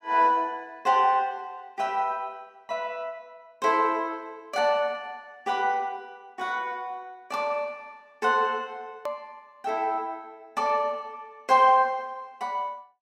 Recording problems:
click at an edit; at 9 s

